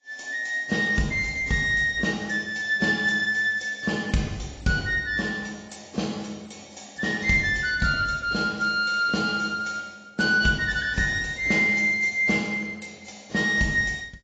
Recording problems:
codec artefacts; AAC, log-spectral distance 5 dB, nothing above 7.6 kHz

